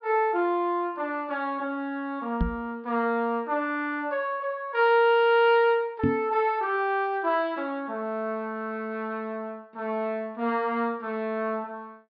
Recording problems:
treble missing; nothing above 5.5 kHz
microphone thump; at 2.5 s and at 6 s; peak +5 dB vs average level

